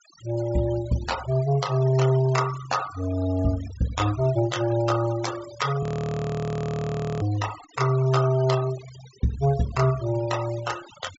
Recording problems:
treble cut off; nothing above 8 kHz
noise reduction artefacts; signal-to-artefact ratio 14 dB
audio freezing; at 6 s for 1.5 s

